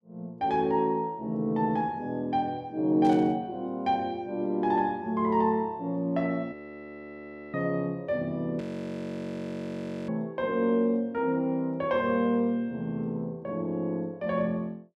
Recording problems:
burst of static; at 3 s and at 8.5 s; peak -13 dB vs average level
frozen audio; at 6.5 s for 1 s and at 8.5 s for 1.5 s

